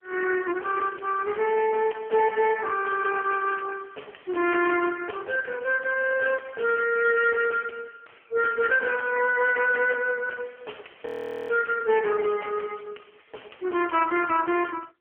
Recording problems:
telephone audio; 340 Hz to 3.2 kHz, AMR-NB
distorted audio; soft clipping, signal-to-distortion ratio 11 dB
audio freezing; at 11 s

